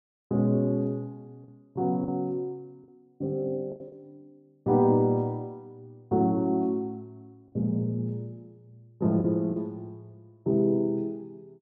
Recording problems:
lost packets; 3% of the sound replaced, filled with the last packet

